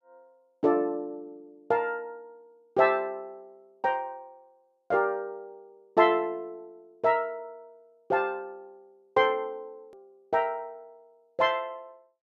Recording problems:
edit click; at 10 s

